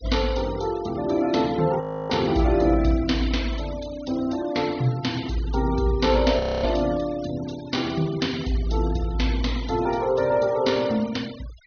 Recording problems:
low-pass filter; nothing above 6.3 kHz
denoising artefacts; signal-to-artefact ratio 18 dB
frozen audio; at 2 s and at 6.5 s

